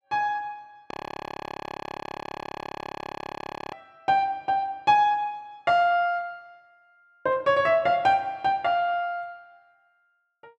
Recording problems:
frozen audio; at 1 s for 3 s

